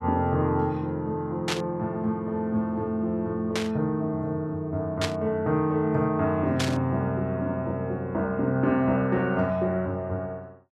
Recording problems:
burst of static; 4 times, first at 1.5 s; peak +2 dB vs average level

